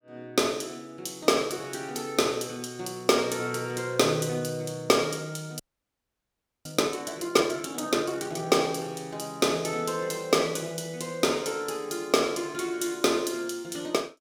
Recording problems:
frozen audio; at 5.5 s for 1 s

